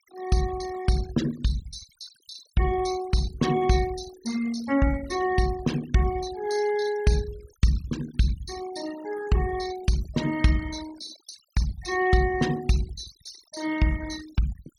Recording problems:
noise reduction artefacts; signal-to-artefact ratio 16 dB

